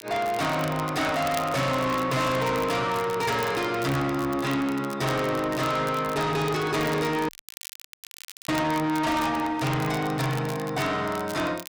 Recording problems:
distortion; soft clipping, signal-to-distortion ratio 7 dB
crackle; vinyl, SNR 17 dB
audio cutting out; at 7.5 s for 1 s

